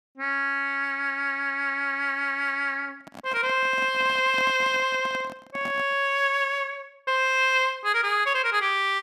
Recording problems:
microphone handling noise; from 3 to 6 s; peak -10 dB vs average level

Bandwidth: 14.5 kHz